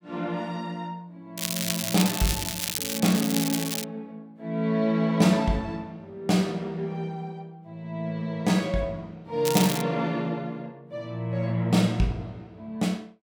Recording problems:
crackling; from 1.5 to 4 s and at 9.5 s; loose cable, SNR 2 dB

